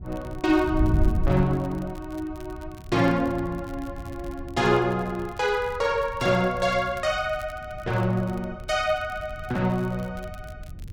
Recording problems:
wind noise; below 100 Hz, SNR 10 dB
crackling; vinyl, SNR 27 dB

